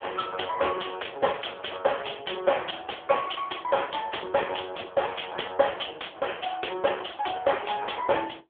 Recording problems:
telephone audio; 300 Hz to 3.4 kHz, AMR-NB

